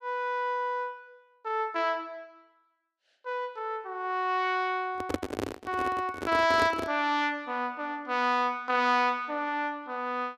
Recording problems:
handling noise; from 5 to 7 s; peak +3 dB vs average level

